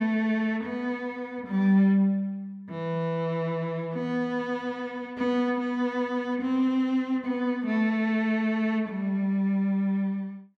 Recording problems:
none

